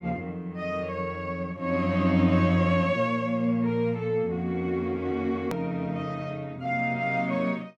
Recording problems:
click at an edit; at 5.5 s

